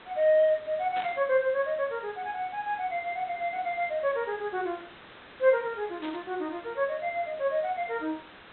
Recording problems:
low-pass filter; nothing above 4 kHz
background hiss; SNR 20 dB
static burst; at 1 s and at 6 s; peak -7 dB vs average level

